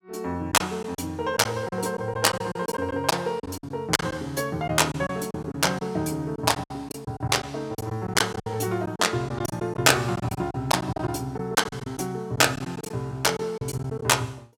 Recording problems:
lost packets; 10% of the sound replaced, filled with silence

